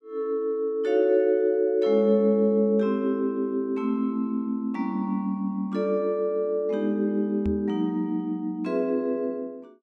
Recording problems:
microphone thump; at 7.5 s; peak -4 dB vs average level

